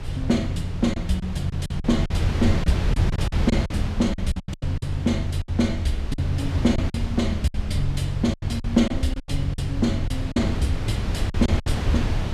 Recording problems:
rumble; below 58 Hz, SNR 11 dB
wind noise; below 150 Hz, SNR 3 dB
lost packets; 11% of the sound replaced, filled with silence

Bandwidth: 14 kHz